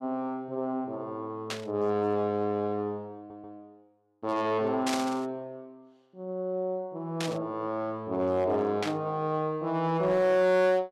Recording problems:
distortion; hard clipping, uneven, signal-to-distortion ratio 12 dB
burst of static; 4 times, first at 1.5 s; peak +1 dB vs average level
audio stuttering; at 3 s

